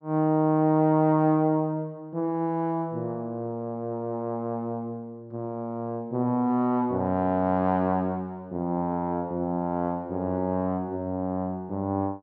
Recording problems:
none

